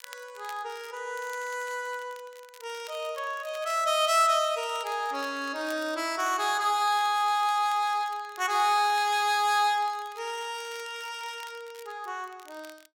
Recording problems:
crackle; vinyl, SNR 23 dB

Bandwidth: 16.5 kHz